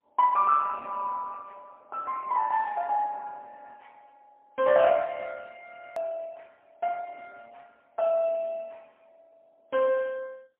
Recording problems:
telephone audio; 320 Hz to 2.6 kHz, AMR-NB, then MP3
click at an edit; at 6 s

